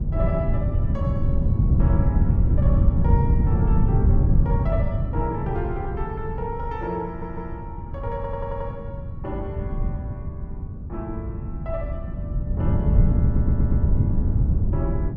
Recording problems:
wind noise; below 130 Hz, SNR -9 dB
audio stuttering; at 7 s, at 8 s and at 13 s

